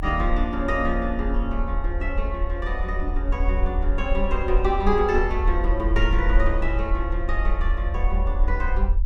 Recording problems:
rumble; below 46 Hz, SNR 0 dB

